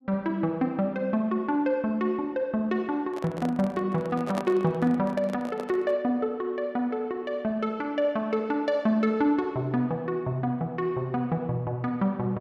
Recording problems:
microphone handling noise; from 3 to 6 s; peak -2 dB vs average level

